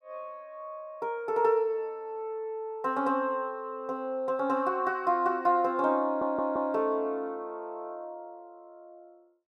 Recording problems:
stutter; at 6 s

